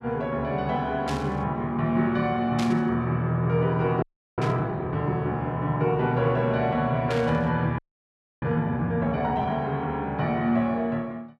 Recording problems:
static burst; 4 times, first at 1 s; peak -4 dB vs average level
audio freezing; at 4 s and at 8 s for 0.5 s

